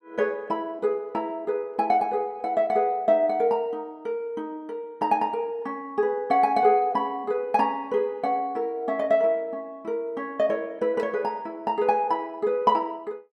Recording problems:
none

